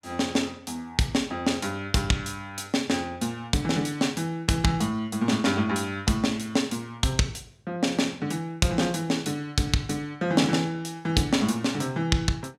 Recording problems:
none

